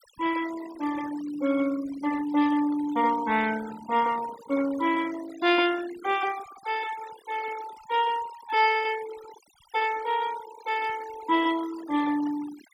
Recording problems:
noise reduction artefacts; signal-to-artefact ratio 16 dB

